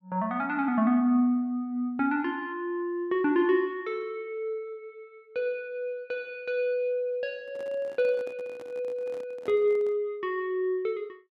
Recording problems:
microphone handling noise; from 7.5 to 10 s; peak -12 dB vs average level

